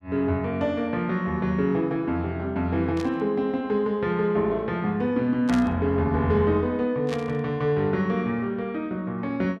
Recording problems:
static burst; at 3 s, at 5.5 s and at 7 s; peak -7 dB vs average level

